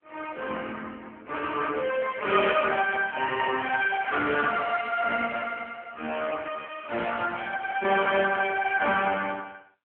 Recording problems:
phone line; 300 Hz to 2.8 kHz, AMR-NB

